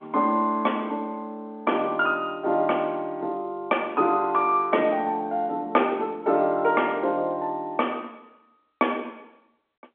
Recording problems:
phone line; 240 Hz to 3.5 kHz, G.711

